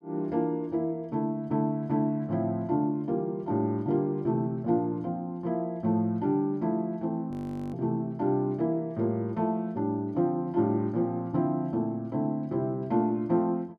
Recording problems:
audio freezing; at 7.5 s

